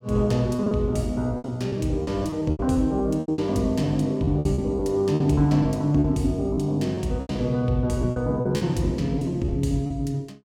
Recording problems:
packet loss; 11% of the sound replaced, filled with repeated pitch periods

